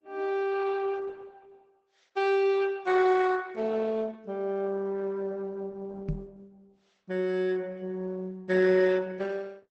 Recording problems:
codec artefacts; Opus, log-spectral distance 3 dB, nothing above 8.2 kHz
microphone thump; at 6 s; peak +1 dB vs average level

